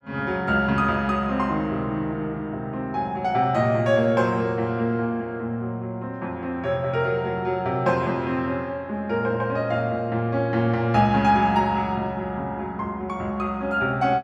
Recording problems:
none

